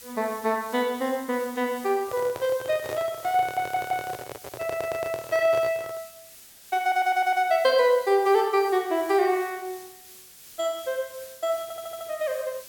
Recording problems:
hiss; SNR 19 dB
microphone handling noise; from 2 to 6 s; peak -7 dB vs average level
audio stuttering; 4 times, first at 3.5 s

